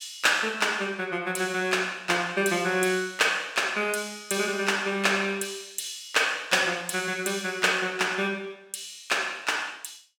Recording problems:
none

